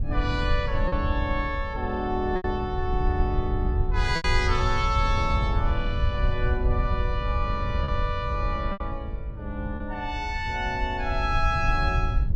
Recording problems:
wind on the microphone; below 84 Hz, SNR 1 dB
packet loss; 3% of the sound replaced, filled with repeated pitch periods

